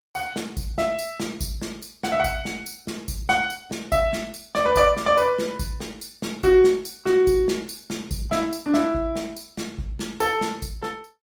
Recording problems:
codec artefacts; Opus, log-spectral distance 4 dB, nothing above 19 kHz

